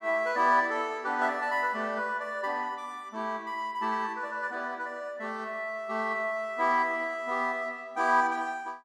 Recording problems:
none

